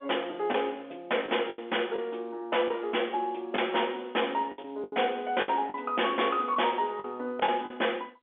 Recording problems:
telephone audio; 280 Hz to 3.5 kHz, G.711
distortion; hard clipping, signal-to-distortion ratio 11 dB
lost packets; 7% of the sound replaced, filled with the last packet

